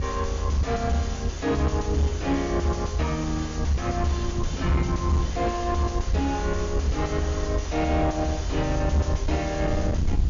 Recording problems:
low-pass filter; nothing above 7.1 kHz
distorted audio; soft clipping, signal-to-distortion ratio 7 dB
hiss; slope 0 dB per octave, SNR 23 dB
rumble; below 80 Hz, SNR 2 dB
wind noise; below 190 Hz, SNR 5 dB

